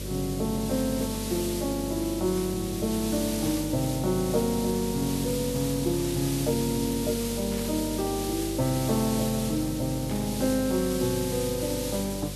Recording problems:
hum; 50 Hz, harmonics up to 600 Hz, SNR 9 dB
background hiss; SNR 7 dB
static burst; 4 times, first at 3.5 s; peak -11 dB vs average level

